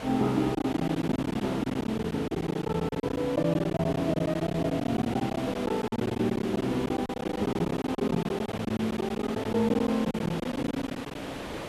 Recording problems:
background hiss; slope -6 dB per octave, SNR 8 dB
lost packets; 17% of the sound replaced, filled with silence

